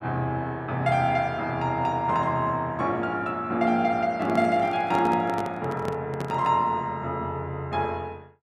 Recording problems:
microphone handling noise; from 4 to 6.5 s; peak -3 dB vs average level

